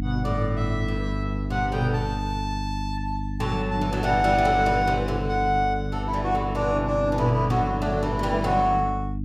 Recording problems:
electrical hum; 50 Hz, harmonics up to 300 Hz, SNR 5 dB

